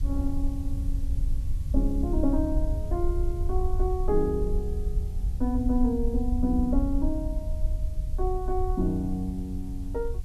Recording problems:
background hiss; slope +1 dB per octave, SNR 27 dB
low-frequency rumble; below 62 Hz, SNR 1 dB

